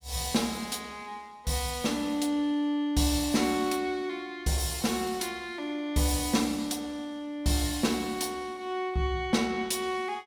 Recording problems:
none

